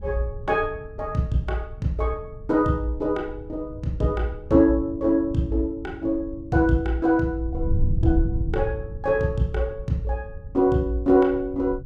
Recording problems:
wind noise; below 100 Hz, SNR 10 dB

